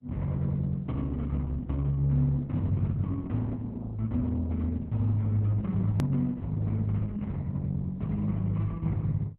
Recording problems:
lossy compression; Opus, log-spectral distance 2 dB, nothing above 13.1 kHz
click at an edit; at 6 s

